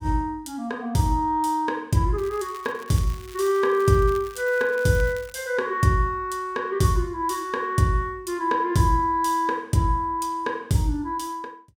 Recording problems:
crackle; from 2 to 5.5 s; loose cable, SNR 22 dB

